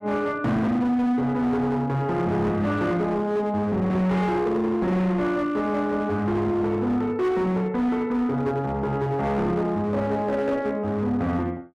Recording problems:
distortion; hard clipping, signal-to-distortion ratio 10 dB

